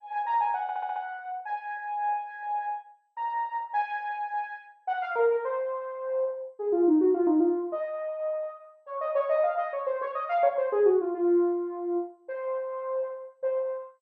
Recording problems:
codec artefacts; MP2, log-spectral distance 2 dB
audio stuttering; at 0.5 s

